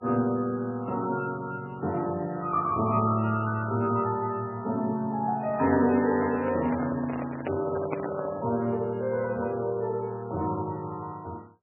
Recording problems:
lossy codec; MP3, log-spectral distance 3 dB, nothing above 2.5 kHz
handling noise; from 6 to 8.5 s; peak -1 dB vs average level

